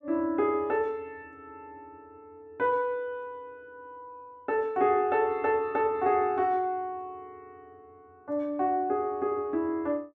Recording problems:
none

